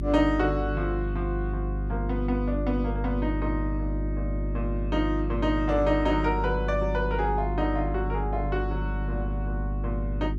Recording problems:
electrical hum; 50 Hz, harmonics up to 400 Hz, SNR 2 dB

